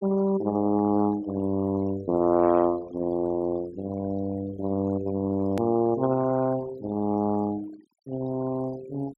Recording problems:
noise reduction artefacts; signal-to-artefact ratio 19 dB
edit click; at 5.5 s

